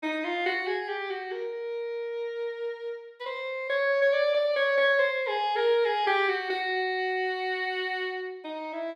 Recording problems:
none

